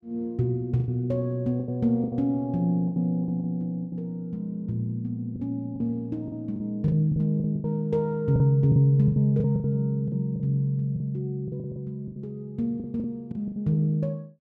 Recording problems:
packet loss; 12% of the sound replaced, filled with the last packet

